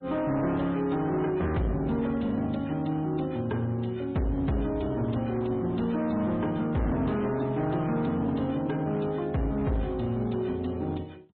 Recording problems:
low-pass filter; nothing above 3.7 kHz
lossy codec; MP3, log-spectral distance 3 dB
distorted audio; hard clipping, uneven, signal-to-distortion ratio 10 dB

